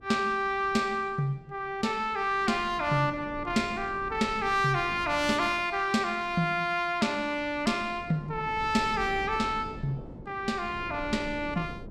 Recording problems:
wind on the microphone; below 340 Hz, SNR 17 dB

